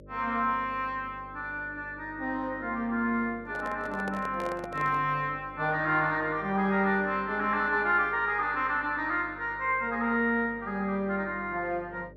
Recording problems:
hum; 50 Hz, harmonics up to 600 Hz, SNR 22 dB
handling noise; from 3.5 to 5 s; peak -7 dB vs average level

